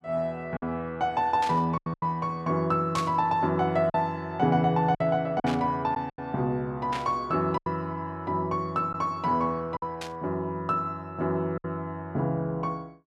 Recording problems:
lost packets; 5% of the sound replaced, filled with silence
burst of static; 5 times, first at 1.5 s; peak -3 dB vs average level

